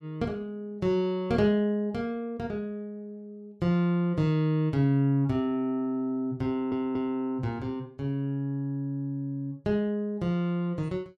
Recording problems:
stutter; at 6.5 s

